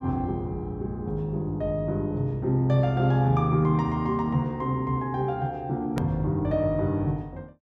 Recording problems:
hard cut with a click; at 6 s

